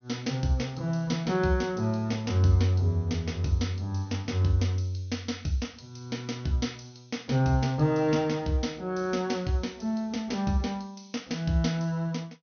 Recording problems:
low-pass filter; nothing above 6.4 kHz

